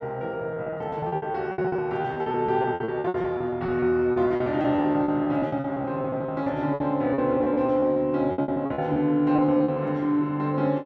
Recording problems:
lost packets; 18% of the sound replaced, filled with repeated pitch periods

